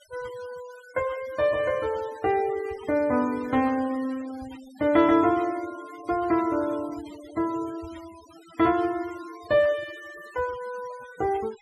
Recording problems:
noise reduction artefacts; signal-to-artefact ratio 20 dB

